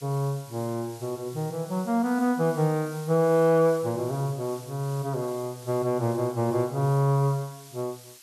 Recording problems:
hiss; SNR 20 dB

